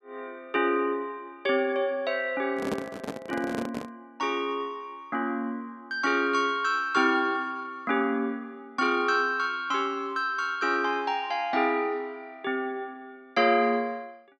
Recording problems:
handling noise; from 2.5 to 4 s; peak +1 dB vs average level

